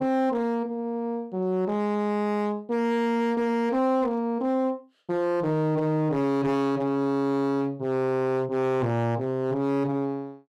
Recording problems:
distorted audio; hard clipping, signal-to-distortion ratio 11 dB

